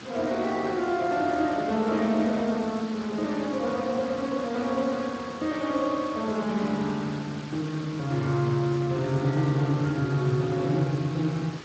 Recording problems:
lossy compression; Speex, log-spectral distance 9 dB
hiss; SNR 14 dB

